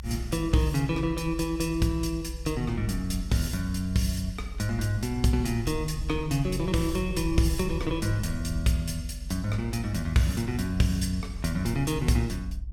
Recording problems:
rumble; below 62 Hz, SNR 9 dB

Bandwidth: 17 kHz